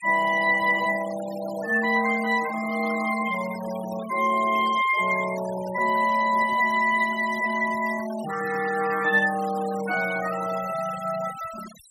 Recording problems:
denoising artefacts; signal-to-artefact ratio 17 dB

